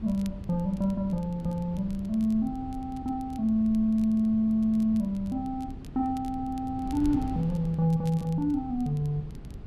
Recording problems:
wind on the microphone; below 180 Hz, SNR 13 dB
crackle; vinyl, SNR 29 dB

